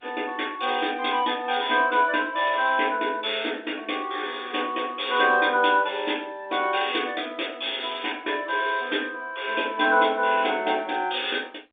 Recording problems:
telephone audio; 220 Hz to 3.6 kHz, G.711

